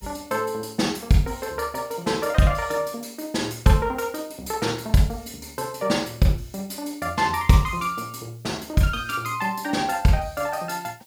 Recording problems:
hiss; slope +7 dB per octave, SNR 29 dB

